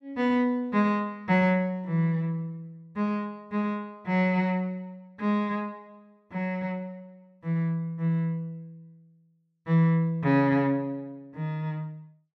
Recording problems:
none

